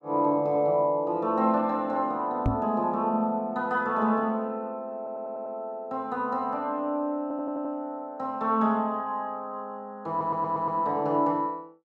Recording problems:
microphone bump; at 2.5 s; peak +5 dB vs average level
audio stuttering; at 5 s, at 7 s and at 10 s

